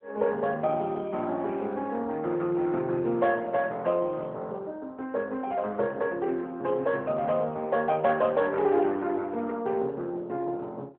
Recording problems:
phone line; 190 Hz to 3.4 kHz, AMR-NB

